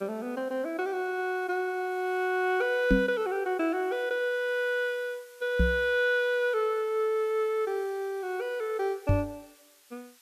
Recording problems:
background hiss; SNR 27 dB
microphone bump; at 3 s, at 5.5 s and at 9 s; peak +8 dB vs average level

